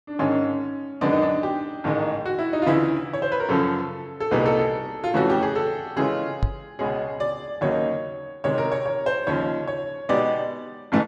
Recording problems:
knock on the microphone; at 6.5 s; peak +4 dB vs average level

